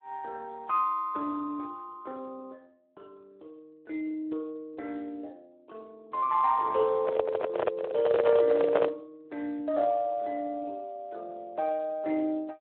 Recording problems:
telephone audio; 300 Hz to 2.9 kHz, Speex
microphone handling noise; from 7 to 9 s; peak +8 dB vs average level

